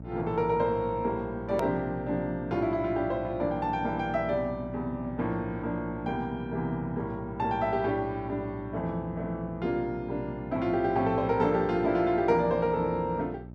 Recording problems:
electrical hum; 60 Hz, harmonics up to 660 Hz, SNR 13 dB
edit click; at 1.5 s

